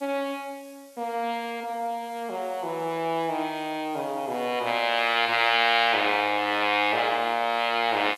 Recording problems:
background hiss; slope +3 dB per octave, SNR 27 dB

